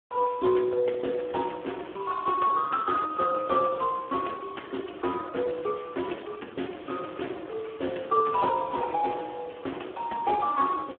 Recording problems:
telephone audio; 280 Hz to 2.1 kHz, Speex

